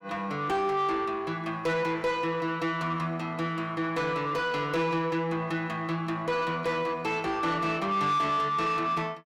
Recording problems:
distorted audio; soft clipping, signal-to-distortion ratio 10 dB

